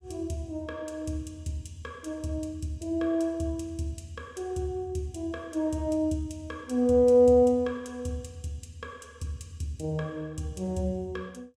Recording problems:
none

